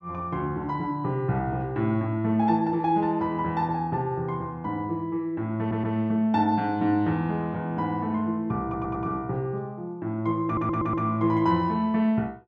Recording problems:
stutter; at 5.5 s, at 8.5 s and at 10 s

